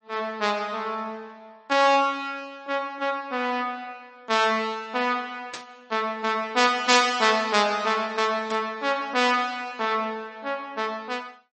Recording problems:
codec artefacts; MP3, log-spectral distance 2 dB, nothing above 8 kHz
burst of static; at 5.5 s, at 7 s and at 8.5 s; peak -6 dB vs average level

